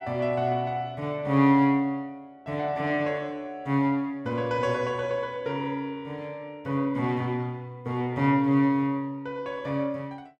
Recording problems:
none

